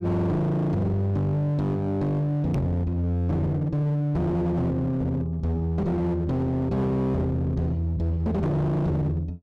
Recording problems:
distorted audio; hard clipping, signal-to-distortion ratio 8 dB
knock on the microphone; at 2.5 s; peak +3 dB vs average level

